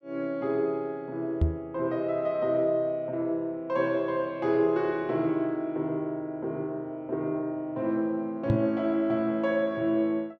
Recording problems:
knock on the microphone; at 1.5 s and at 8.5 s; peak +7 dB vs average level

